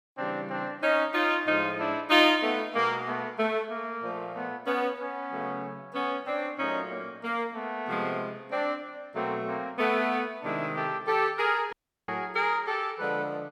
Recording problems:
dropout; at 12 s

